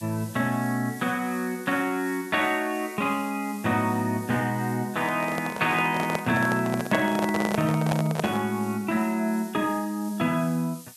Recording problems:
background hiss; slope +6 dB per octave, SNR 19 dB
handling noise; from 5 to 8.5 s; peak +2 dB vs average level

